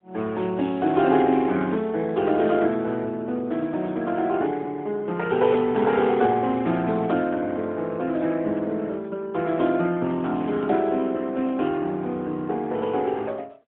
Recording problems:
telephone audio; 130 Hz to 3.7 kHz, AMR-NB, then MP3

